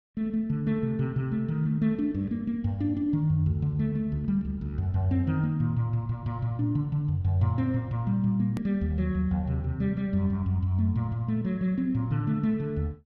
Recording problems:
hard cut with a click; at 8.5 s

